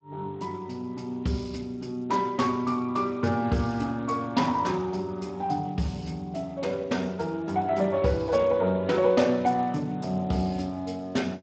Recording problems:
lossy compression; Speex, log-spectral distance 4 dB, nothing above 7.6 kHz

